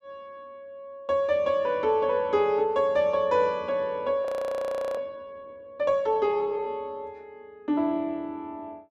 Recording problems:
frozen audio; at 4.5 s for 0.5 s

